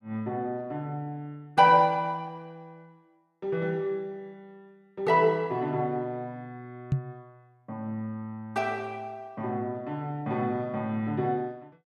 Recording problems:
microphone bump; at 7 s; peak +6 dB vs average level

